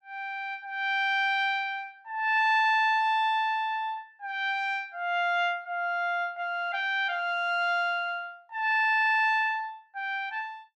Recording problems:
none

